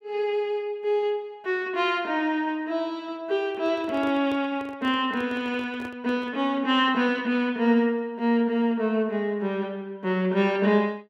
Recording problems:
microphone handling noise; from 3.5 to 6.5 s; peak -10 dB vs average level

